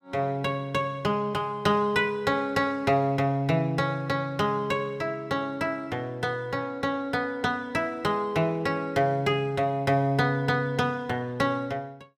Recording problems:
none

